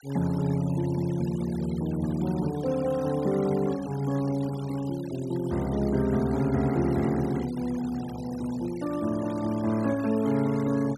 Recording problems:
noise reduction artefacts; signal-to-artefact ratio 19 dB

